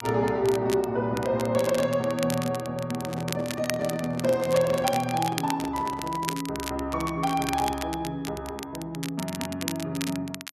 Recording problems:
crackling; vinyl, SNR 10 dB
microphone handling noise; from 3 to 6.5 s; peak -6 dB vs average level

